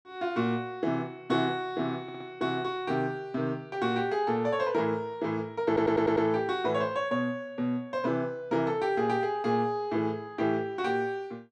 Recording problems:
stutter; at 2 s and at 5.5 s

